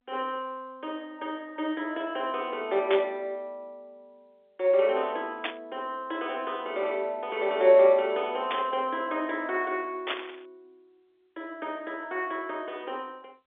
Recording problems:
telephone audio; 260 Hz to 3.6 kHz, G.711
burst of static; 4 times, first at 3 s; peak +2 dB vs average level

